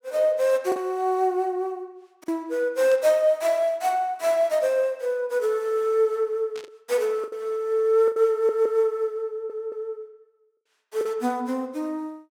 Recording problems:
lost packets; 3% of the sound replaced, filled with the last packet
static burst; at 3 s and at 6.5 s; peak -14 dB vs average level
audio stuttering; at 8.5 s and at 9.5 s

